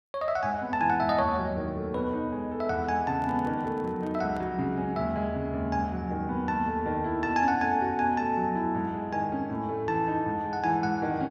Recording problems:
handling noise; from 3 to 4.5 s; peak -13 dB vs average level

